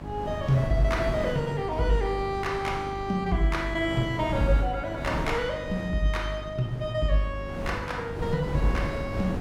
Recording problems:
hum; 50 Hz, harmonics up to 1.3 kHz, SNR 12 dB
wind on the microphone; below 470 Hz, SNR 8 dB

